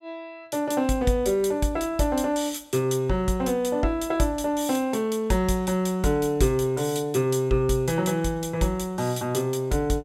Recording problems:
none

